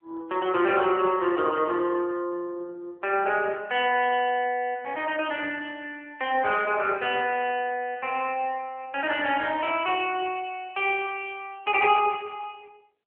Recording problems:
phone line; 300 Hz to 3.3 kHz, AMR-NB

